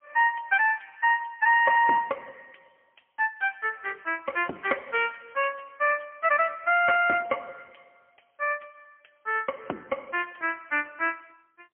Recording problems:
telephone audio; 260 Hz to 3.1 kHz, AMR-NB, then MP3

